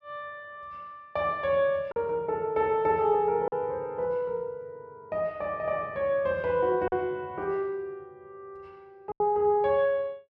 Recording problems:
lost packets; 2% of the sound replaced, filled with silence

